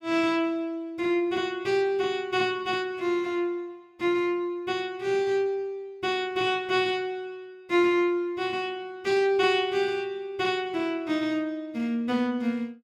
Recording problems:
none

